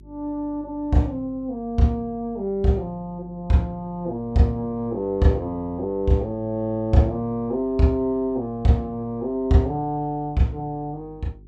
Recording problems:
mains hum; 50 Hz, harmonics up to 400 Hz, SNR 23 dB

